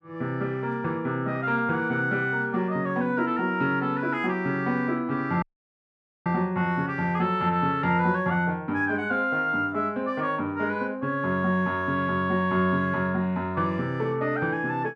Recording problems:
dropout; at 5.5 s for 1 s

